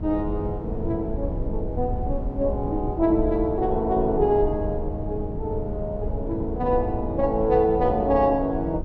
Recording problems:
electrical hum; 50 Hz, harmonics up to 800 Hz, SNR 19 dB
low-frequency rumble; below 110 Hz, SNR 8 dB

